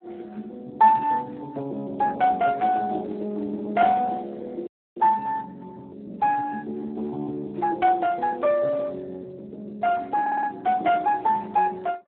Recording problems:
phone line; 260 Hz to 3 kHz, Speex
dropout; at 4.5 s
stutter; at 10 s

